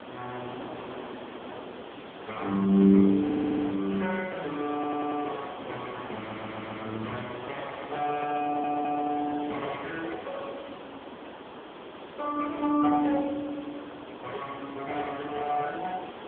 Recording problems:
telephone audio; 150 Hz to 3.4 kHz, AMR-NB
background hiss; SNR 12 dB
crackling; from 2 to 5.5 s and from 7 to 10 s; loose cable, SNR 26 dB
audio stuttering; 4 times, first at 3 s
handling noise; from 7 to 10 s; peak -7 dB vs average level

